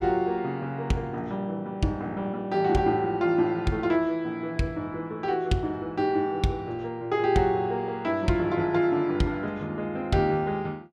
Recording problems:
none

